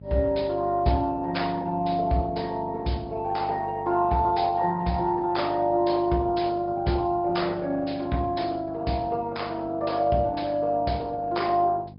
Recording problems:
treble missing; nothing above 5.2 kHz
lossy codec; Opus, log-spectral distance 3 dB
hum; 50 Hz, harmonics up to 500 Hz, SNR 17 dB

